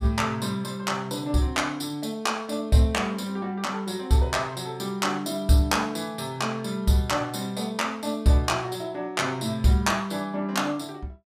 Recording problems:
none

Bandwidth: 15.5 kHz